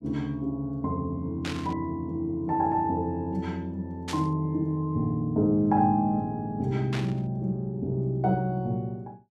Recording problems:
static burst; at 1.5 s, at 4 s and at 7 s; peak -4 dB vs average level

